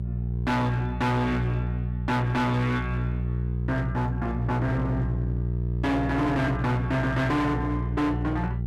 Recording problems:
distortion; hard clipping, uneven, signal-to-distortion ratio 7 dB
hum; 60 Hz, harmonics up to 420 Hz, SNR 3 dB

